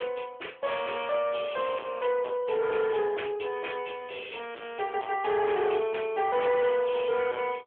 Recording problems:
phone line; 280 Hz to 3.4 kHz, AMR-NB
distorted audio; soft clipping, signal-to-distortion ratio 10 dB

